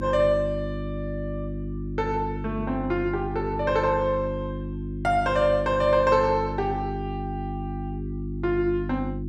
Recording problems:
hum; 50 Hz, harmonics up to 350 Hz, SNR 7 dB

